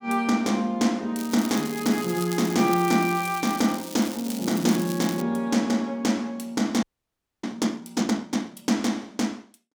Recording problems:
crackling; from 1 to 5 s; loose cable, SNR 12 dB
frozen audio; at 7 s for 0.5 s

